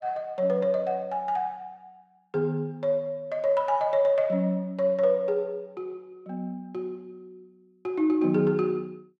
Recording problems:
none

